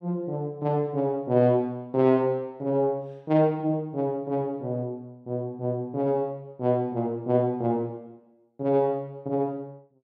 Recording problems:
none

